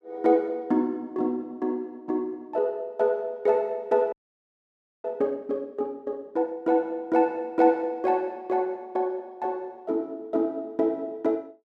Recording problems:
frozen audio; at 4 s for 1 s

